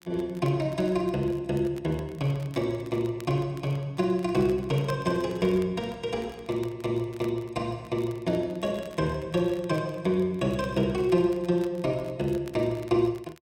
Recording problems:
crackle; vinyl, SNR 25 dB

